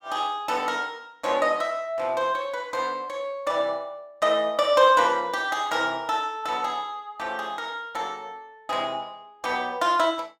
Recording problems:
none

